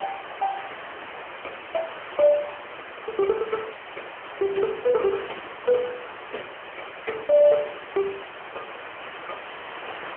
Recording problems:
telephone audio; 280 Hz to 3.2 kHz, AMR-NB
background hiss; SNR 12 dB

